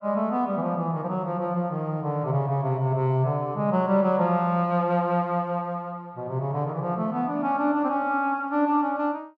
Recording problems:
none

